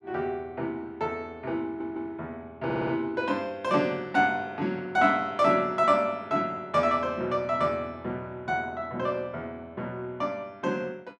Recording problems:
stutter; at 1.5 s and at 2.5 s

